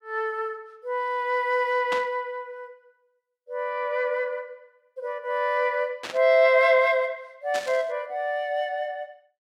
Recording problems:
static burst; at 2 s, at 6 s and at 7.5 s; peak -3 dB vs average level

